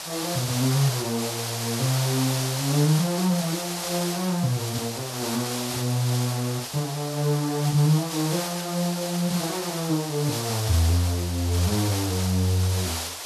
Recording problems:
background hiss; SNR 5 dB

